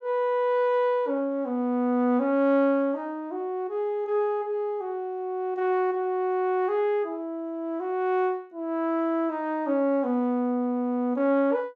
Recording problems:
none

